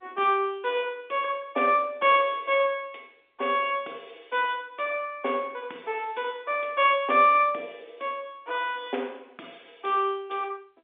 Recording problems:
phone line; 260 Hz to 3.6 kHz, G.711

